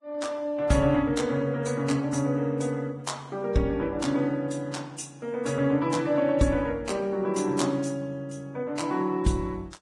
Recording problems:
lossy codec; Vorbis, log-spectral distance 2 dB, nothing above 10.4 kHz

